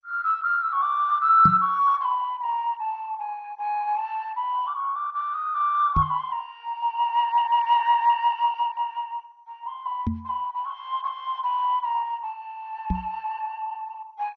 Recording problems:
codec artefacts; MP2, log-spectral distance 3 dB, nothing above 5.8 kHz
microphone thump; 4 times, first at 1.5 s; peak +3 dB vs average level

